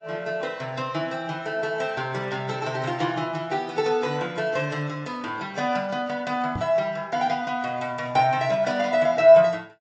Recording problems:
low-pass filter; nothing above 8 kHz
lossy codec; AAC, log-spectral distance 2 dB
microphone thump; at 6.5 s; peak -3 dB vs average level

